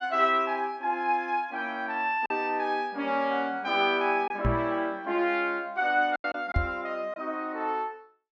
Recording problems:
lost packets; 2% of the sound replaced, filled with silence
microphone bump; at 4.5 s and at 6.5 s; peak +5 dB vs average level

